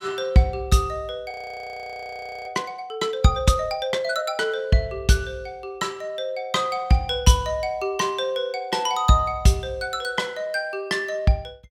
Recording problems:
frozen audio; at 1.5 s for 1 s

